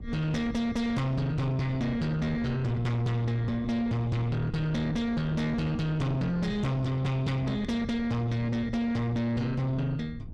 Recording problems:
distorted audio; soft clipping, signal-to-distortion ratio 8 dB
wind on the microphone; below 180 Hz, SNR 13 dB

